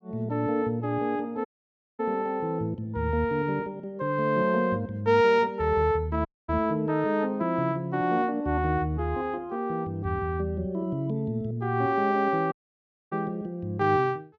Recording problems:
dropout; at 1.5 s for 0.5 s, at 6.5 s and at 13 s for 0.5 s

